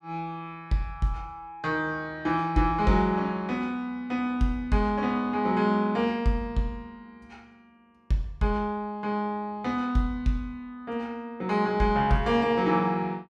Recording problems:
none

